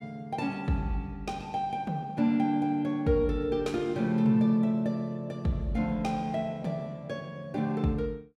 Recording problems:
none

